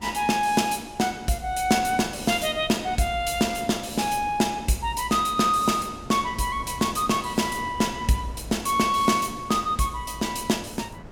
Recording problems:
wind noise; below 480 Hz, SNR 19 dB

